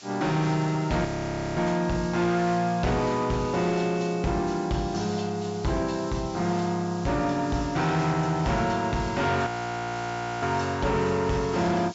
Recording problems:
treble cut off; nothing above 8 kHz
distorted audio; hard clipping, uneven, signal-to-distortion ratio 12 dB
background hiss; slope +2 dB per octave, SNR 19 dB
frozen audio; at 1 s for 0.5 s and at 9.5 s for 1 s

